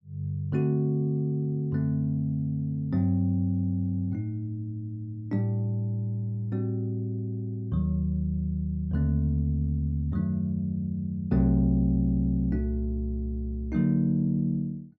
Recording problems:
none

